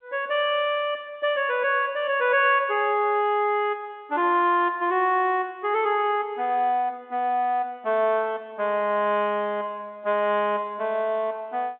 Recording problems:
telephone audio; 260 Hz to 3.7 kHz, G.711

